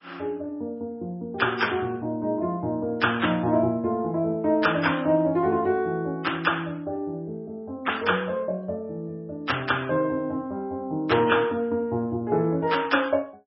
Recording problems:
codec artefacts; MP3, log-spectral distance 2 dB, nothing above 5.5 kHz

